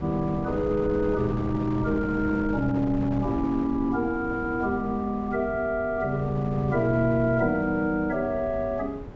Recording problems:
low-pass filter; nothing above 8 kHz
wind on the microphone; below 380 Hz, SNR 10 dB

